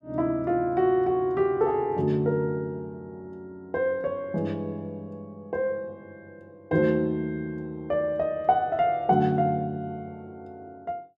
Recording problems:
none

